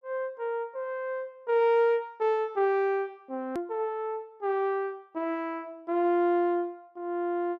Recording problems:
edit click; at 3.5 s

